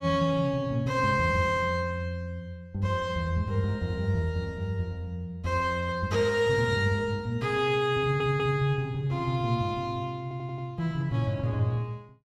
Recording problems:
stutter; at 8 s and at 10 s

